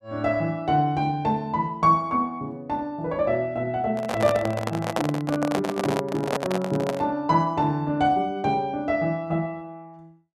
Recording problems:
microphone handling noise; from 4 to 7 s; peak +3 dB vs average level

